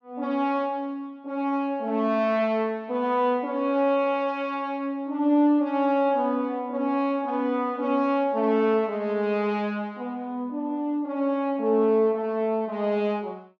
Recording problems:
none

